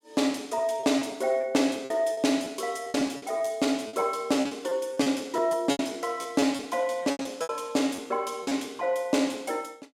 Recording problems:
packet loss; 11% of the sound replaced, filled with repeated pitch periods

